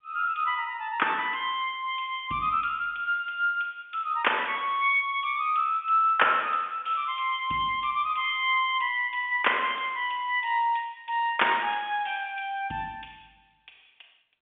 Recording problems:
telephone audio; 170 Hz to 3.5 kHz, G.711

